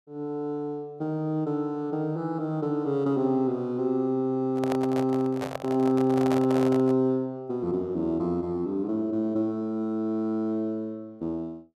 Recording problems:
microphone handling noise; from 4.5 to 7 s; peak -1 dB vs average level

